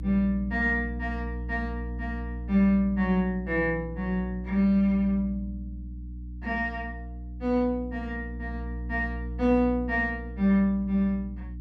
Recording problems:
hum; 60 Hz, harmonics up to 300 Hz, SNR 10 dB

